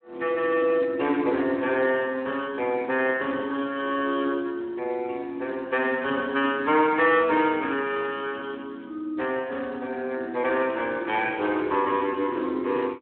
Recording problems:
telephone audio; 240 Hz to 3.2 kHz, Speex

